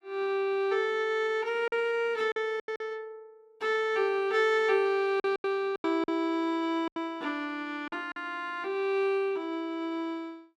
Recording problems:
packet loss; 6% of the sound replaced, filled with silence

